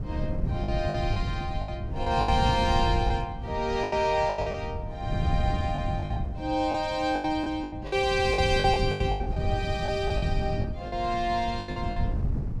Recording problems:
wind on the microphone; below 140 Hz, SNR 3 dB
lost packets; 12% of the sound replaced, filled with the last packet

